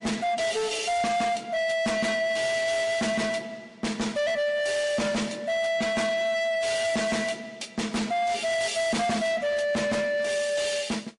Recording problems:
lossy codec; MP3, then MP3, log-spectral distance 3 dB
distortion; soft clipping, signal-to-distortion ratio 6 dB

